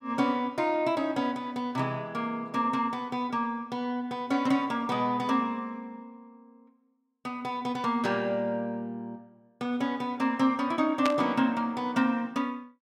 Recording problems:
static burst; at 11 s; peak +3 dB vs average level

